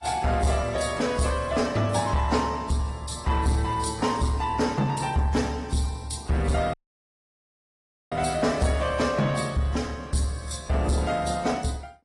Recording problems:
lossy codec; AAC, then AAC, log-spectral distance 4 dB, nothing above 10.1 kHz
distortion; soft clipping, signal-to-distortion ratio 11 dB
audio cutting out; at 6.5 s for 1.5 s

